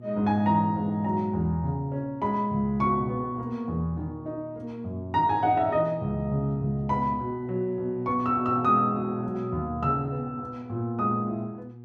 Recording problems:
mains hum; 60 Hz, harmonics up to 720 Hz, SNR 18 dB

